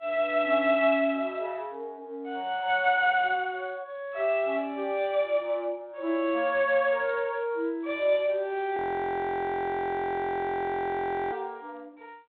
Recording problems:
phone line; 240 Hz to 3.6 kHz, G.726
frozen audio; at 9 s for 2.5 s

